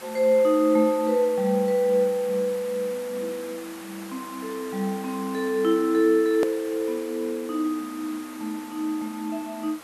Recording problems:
background hiss; SNR 17 dB
hard cut with a click; at 6.5 s

